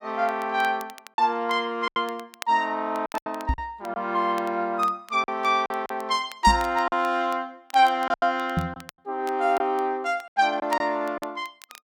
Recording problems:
crackle; vinyl, SNR 22 dB
packet loss; 7% of the sound replaced, filled with silence
microphone bump; at 3.5 s, at 6.5 s and at 8.5 s; peak +3 dB vs average level

